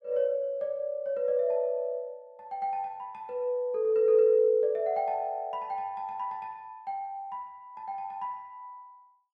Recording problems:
none

